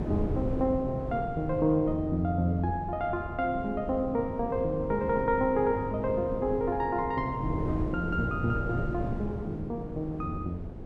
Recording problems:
wind noise; below 320 Hz, SNR 7 dB

